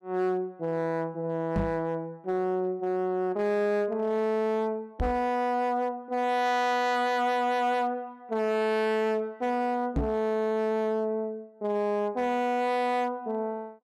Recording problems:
distortion; hard clipping, signal-to-distortion ratio 10 dB
microphone bump; at 1.5 s, at 5 s and at 10 s; peak +4 dB vs average level

